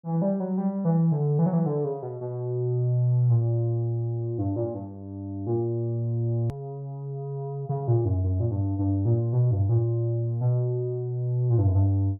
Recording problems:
click at an edit; at 6.5 s

